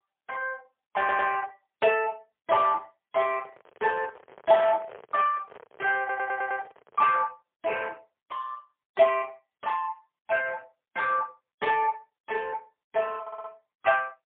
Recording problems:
phone line; 280 Hz to 3.4 kHz, AMR-NB, then MP3
stutter; at 1 s, at 6 s and at 13 s
microphone handling noise; from 3.5 to 7.5 s; peak -14 dB vs average level

